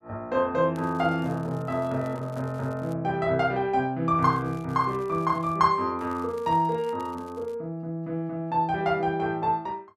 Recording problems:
crackle; from 1 to 3 s, from 4 to 5.5 s and from 6 to 7.5 s; loose cable, SNR 29 dB

